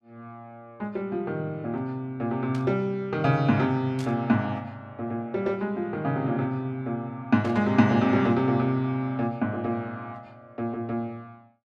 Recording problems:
static burst; at 2.5 s, at 4 s and at 7.5 s; peak -12 dB vs average level

